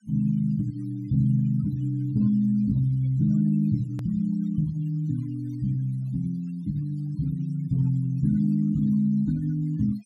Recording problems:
denoising artefacts; signal-to-artefact ratio 25 dB
hard cut with a click; at 4 s

